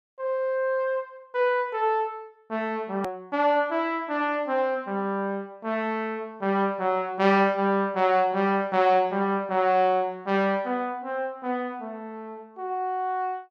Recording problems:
edit click; at 3 s

